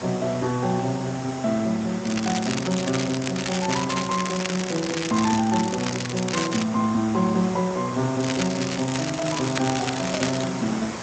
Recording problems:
codec artefacts; Speex, log-spectral distance 16 dB
background hiss; slope -5 dB per octave, SNR 10 dB
crackle; from 2 to 6.5 s and from 8 to 10 s; loose cable, SNR 5 dB

